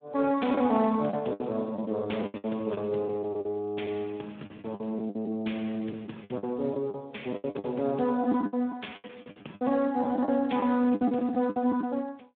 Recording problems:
telephone audio; 170 Hz to 3.6 kHz, Speex
lost packets; 14% of the sound replaced, filled with the last packet

